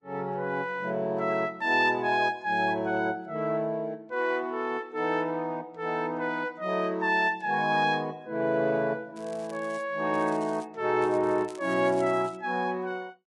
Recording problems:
codec artefacts; Vorbis, log-spectral distance 2 dB, nothing above 10.7 kHz
crackle; at 9 s, at 10 s and from 11 to 12 s; loose cable, SNR 25 dB

